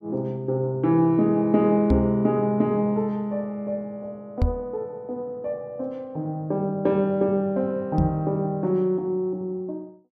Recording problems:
knock on the microphone; at 2 s, at 4.5 s and at 8 s; peak +6 dB vs average level

